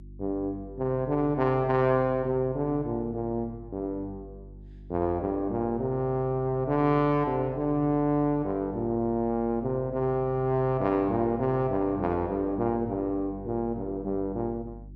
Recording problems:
hum; 50 Hz, harmonics up to 350 Hz, SNR 19 dB

